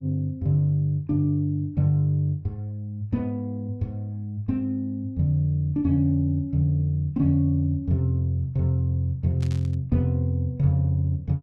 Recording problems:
static burst; at 9.5 s; peak -14 dB vs average level

